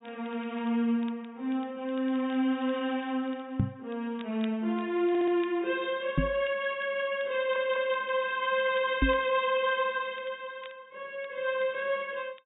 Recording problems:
low-pass filter; nothing above 4 kHz
crackle; vinyl, SNR 27 dB
microphone thump; at 3.5 s, at 6 s and at 9 s; peak +6 dB vs average level
stutter; at 5 s and at 7.5 s

